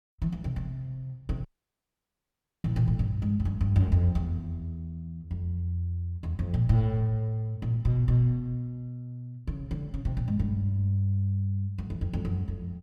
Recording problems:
audio cutting out; at 1.5 s for 1 s

